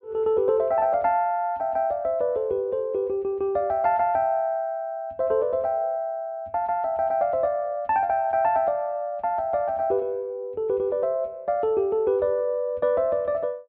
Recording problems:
none

